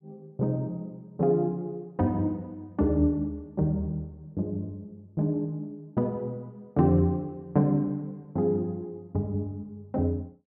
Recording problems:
none

